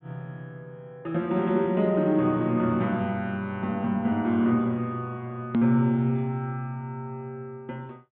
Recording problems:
treble cut off; nothing above 4 kHz
click at an edit; at 5.5 s

